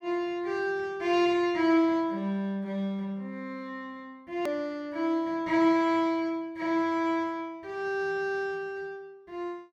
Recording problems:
edit click; at 4.5 s

